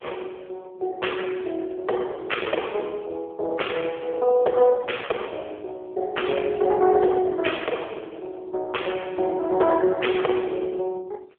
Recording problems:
telephone audio; 320 Hz to 3.4 kHz, AMR-NB

